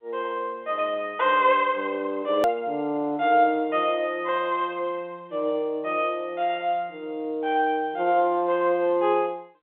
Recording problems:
telephone audio; 240 Hz to 3.6 kHz, G.711
hard cut with a click; at 2.5 s

